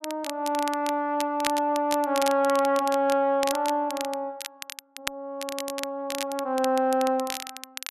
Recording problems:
crackle; vinyl, SNR 11 dB

